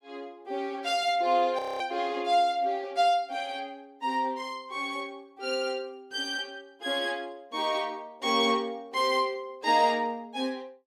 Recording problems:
frozen audio; at 1.5 s

